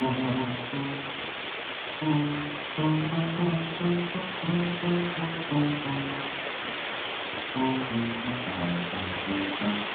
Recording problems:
phone line; 190 Hz to 3.7 kHz, Speex
hiss; SNR 2 dB

